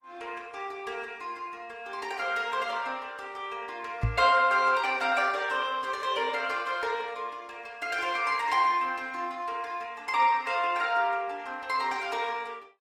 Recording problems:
lossy compression; Opus, log-spectral distance 3 dB
microphone bump; at 4 s; peak +4 dB vs average level

